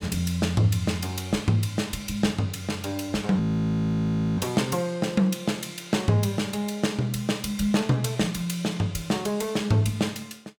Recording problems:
frozen audio; at 3.5 s for 1 s

